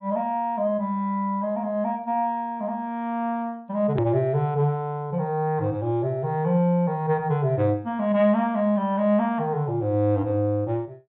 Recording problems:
treble missing; nothing above 4 kHz
hard cut with a click; at 4 s

